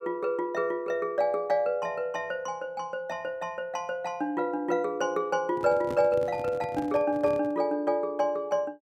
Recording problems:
handling noise; from 5.5 to 7.5 s; peak -5 dB vs average level

